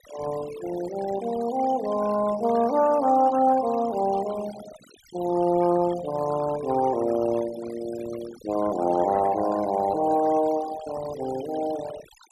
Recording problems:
noise reduction artefacts; signal-to-artefact ratio 16 dB

